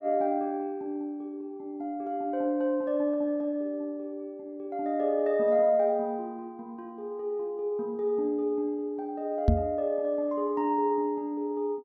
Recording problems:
microphone thump; at 9.5 s; peak +10 dB vs average level

